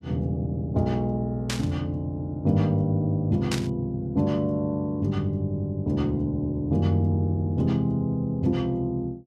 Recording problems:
static burst; at 1.5 s and at 3.5 s; peak 0 dB vs average level

